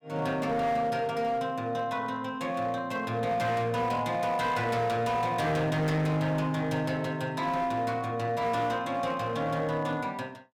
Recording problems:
distortion; hard clipping, signal-to-distortion ratio 12 dB

